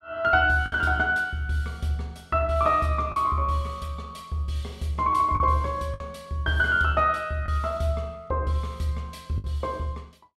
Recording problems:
packet loss; 3% of the sound replaced, filled with the last packet

